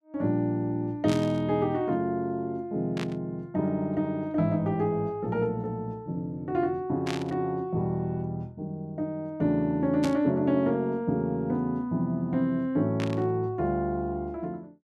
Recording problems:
burst of static; 5 times, first at 1 s; peak -2 dB vs average level

